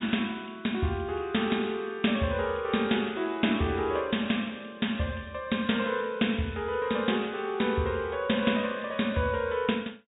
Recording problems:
treble cut off; nothing above 4 kHz

